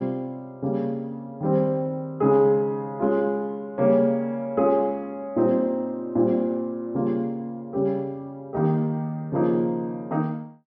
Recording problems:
treble missing; nothing above 5.8 kHz

